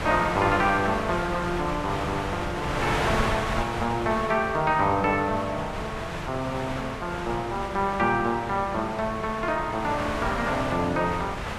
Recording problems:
wind on the microphone; below 1.9 kHz, SNR 5 dB

